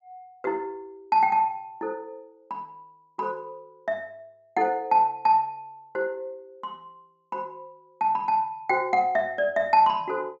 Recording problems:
treble cut off; nothing above 8 kHz

